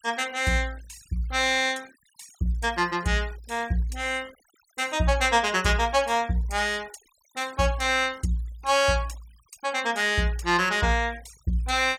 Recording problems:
denoising artefacts; signal-to-artefact ratio 23 dB

